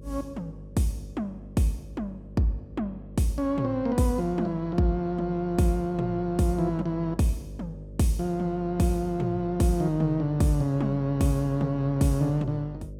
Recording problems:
electrical hum; 50 Hz, harmonics up to 600 Hz, SNR 16 dB

